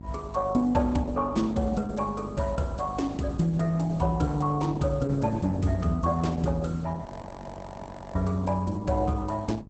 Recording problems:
lossy compression; Opus, log-spectral distance 3 dB, nothing above 8.2 kHz
hum; 50 Hz, harmonics up to 750 Hz, SNR 16 dB
audio freezing; at 7 s for 1 s

